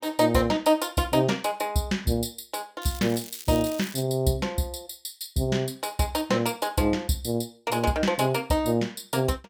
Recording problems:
crackle; from 3 to 4 s; loose cable, SNR 14 dB

